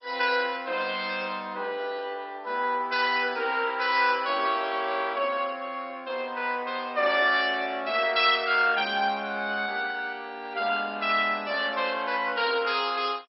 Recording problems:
lossy compression; MP2, log-spectral distance 4 dB, nothing above 5.3 kHz

